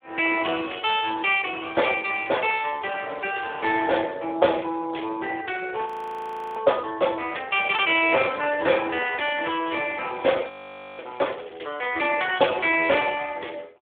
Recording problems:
phone line; 300 Hz to 3.6 kHz, Speex
crackling; from 2 to 4 s, at 8 s and from 9.5 to 12 s; loose cable, SNR 24 dB
frozen audio; at 6 s for 0.5 s and at 10 s for 0.5 s

